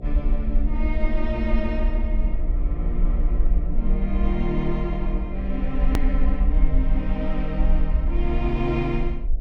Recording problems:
hum; 60 Hz, harmonics up to 720 Hz, SNR 10 dB
low-frequency rumble; below 48 Hz, SNR -3 dB
hard cut with a click; at 6 s

